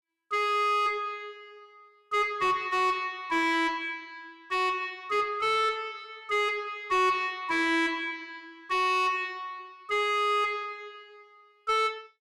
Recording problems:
distortion; soft clipping, signal-to-distortion ratio 6 dB

